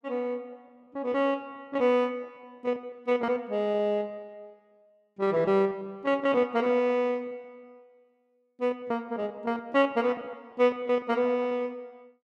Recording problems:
packet loss; 16% of the sound replaced, filled with repeated pitch periods

